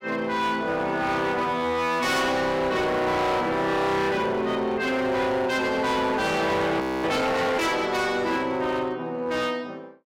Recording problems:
distortion; hard clipping, uneven, signal-to-distortion ratio 8 dB
audio freezing; at 7 s

